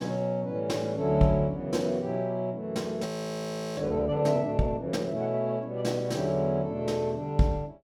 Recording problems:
audio freezing; at 3 s for 0.5 s

